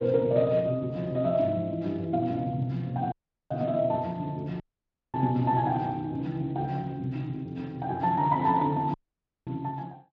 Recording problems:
lossy compression; Speex, log-spectral distance 2 dB
dropout; at 3 s, at 4.5 s for 0.5 s and at 9 s for 0.5 s

